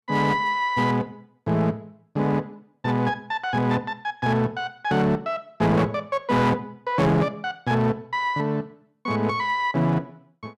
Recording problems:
distorted audio; hard clipping, uneven, signal-to-distortion ratio 11 dB

